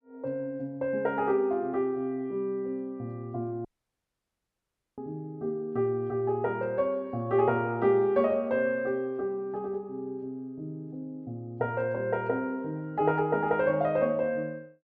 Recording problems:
dropout; at 3.5 s for 1.5 s

